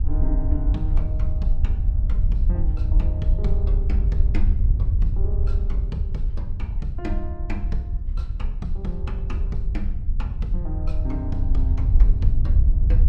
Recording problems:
wind on the microphone; below 66 Hz, SNR -11 dB

